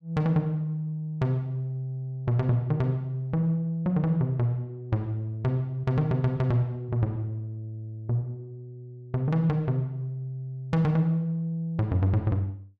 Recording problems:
none

